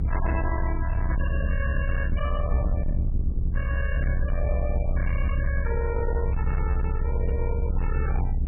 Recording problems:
lossy compression; MP3, log-spectral distance 2 dB, nothing above 2.4 kHz
distortion; soft clipping, signal-to-distortion ratio 8 dB
low-frequency rumble; below 76 Hz, SNR -5 dB

